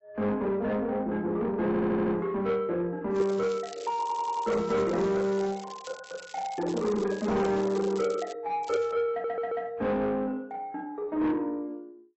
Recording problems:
codec artefacts; AAC, log-spectral distance 3 dB, nothing above 6.9 kHz
distorted audio; soft clipping, signal-to-distortion ratio 11 dB
audio stuttering; at 1.5 s, at 4 s and at 9 s
crackle; from 3 to 6 s, from 6 to 8.5 s and at 8.5 s; loose cable, SNR 19 dB

